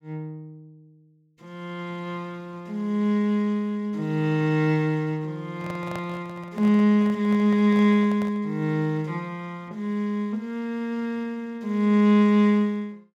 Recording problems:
handling noise; from 5.5 to 8.5 s; peak -8 dB vs average level

